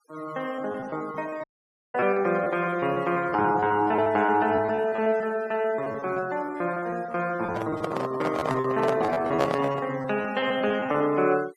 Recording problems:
noise reduction artefacts; signal-to-artefact ratio 21 dB
packet loss; 16% of the sound replaced, filled with repeated pitch periods
audio cutting out; at 1.5 s for 0.5 s
microphone handling noise; from 7.5 to 10 s; peak +4 dB vs average level

